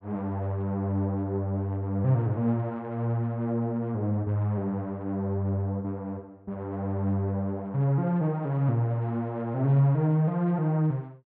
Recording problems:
none

